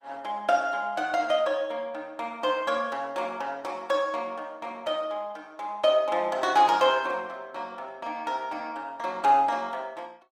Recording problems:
codec artefacts; Opus, log-spectral distance 2 dB, nothing above 20.1 kHz

